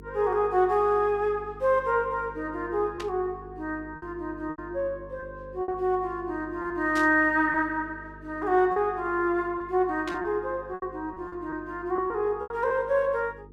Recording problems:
hum; 50 Hz, harmonics up to 450 Hz, SNR 21 dB
packet loss; 5% of the sound replaced, filled with repeated pitch periods
static burst; at 3 s, at 7 s and at 10 s; peak -7 dB vs average level

